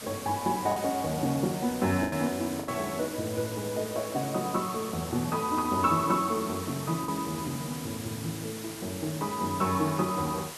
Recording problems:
background hiss; slope -1 dB per octave, SNR 10 dB
lost packets; 2% of the sound replaced, filled with the last packet

